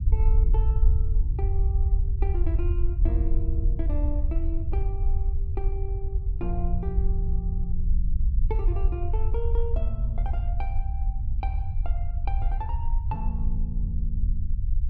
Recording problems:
low-frequency rumble; below 64 Hz, SNR -11 dB

